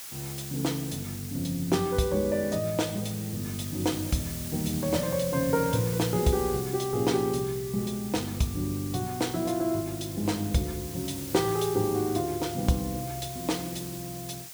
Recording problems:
background hiss; slope +2 dB per octave, SNR 10 dB

